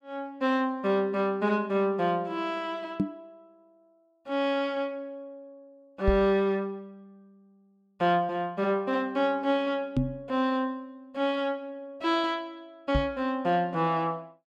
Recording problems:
microphone bump; 4 times, first at 3 s; peak +5 dB vs average level

